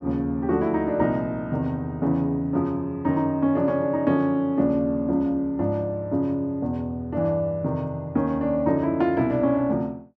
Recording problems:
none

